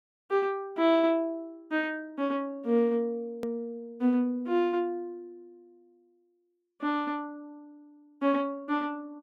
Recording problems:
click at an edit; at 3.5 s

